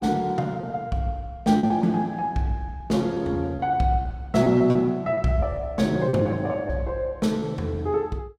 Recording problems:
lost packets; 9% of the sound replaced, filled with repeated pitch periods

